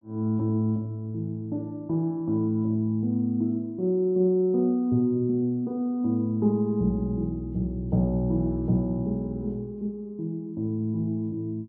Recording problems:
none

